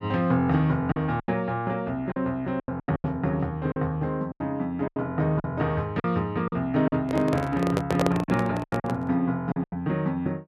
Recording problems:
lost packets; 10% of the sound replaced, filled with silence
microphone handling noise; from 7 to 9 s; peak +4 dB vs average level

